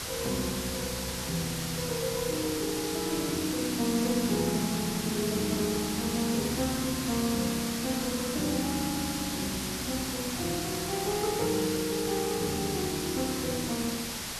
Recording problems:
background hiss; slope 0 dB per octave, SNR 2 dB

